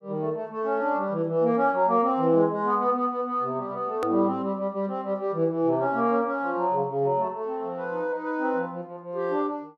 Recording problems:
click at an edit; at 4 s

